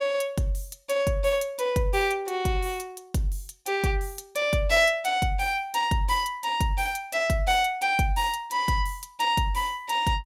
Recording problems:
none

